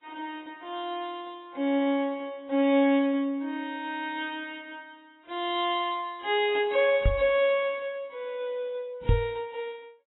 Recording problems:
codec artefacts; AAC, log-spectral distance 2 dB, nothing above 3.2 kHz
microphone thump; at 7 s and at 9 s; peak +8 dB vs average level

